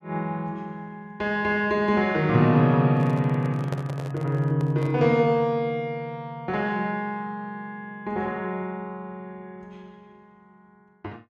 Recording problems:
microphone handling noise; from 3 to 5 s; peak -6 dB vs average level

